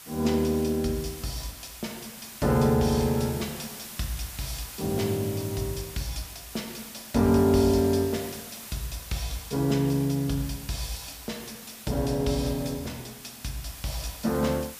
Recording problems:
background hiss; slope 0 dB per octave, SNR 13 dB

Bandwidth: 15 kHz